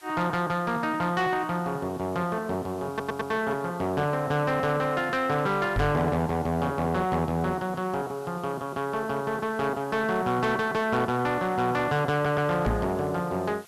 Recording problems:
distortion; soft clipping, signal-to-distortion ratio 11 dB
background hiss; slope +1 dB per octave, SNR 24 dB
stutter; at 3 s and at 12 s
microphone thump; at 6 s and at 13 s; peak +4 dB vs average level

